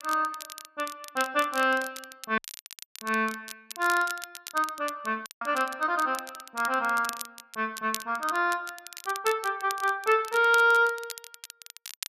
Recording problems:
crackling; vinyl, SNR 14 dB
dropout; at 2.5 s for 0.5 s and at 5.5 s

